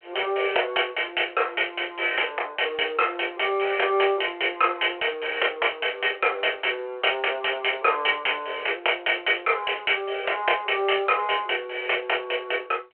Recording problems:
telephone audio; 320 Hz to 3.2 kHz, G.726

